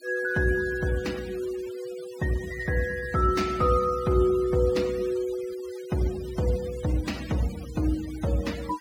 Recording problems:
denoising artefacts; signal-to-artefact ratio 18 dB

